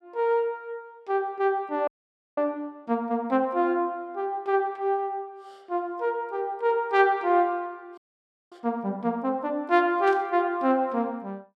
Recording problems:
frozen audio; at 2 s and at 8 s for 0.5 s
burst of static; at 10 s; peak -11 dB vs average level

